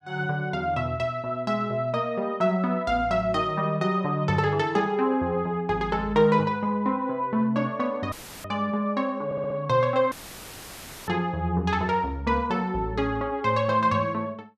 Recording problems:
dropout; at 8 s and at 10 s for 1 s; filled with static
audio stuttering; at 9.5 s

